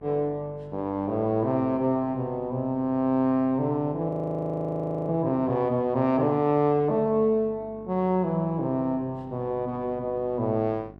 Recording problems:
hum; 50 Hz, harmonics up to 1.1 kHz, SNR 23 dB
audio freezing; at 4 s for 1 s

